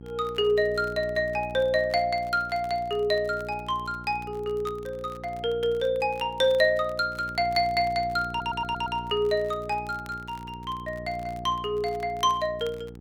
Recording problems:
electrical hum; 60 Hz, harmonics up to 840 Hz, SNR 15 dB
crackle; vinyl, SNR 28 dB
audio stuttering; at 8.5 s

